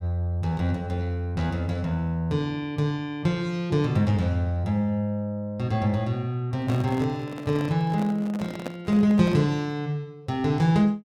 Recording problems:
microphone handling noise; from 6.5 to 9.5 s; peak -4 dB vs average level

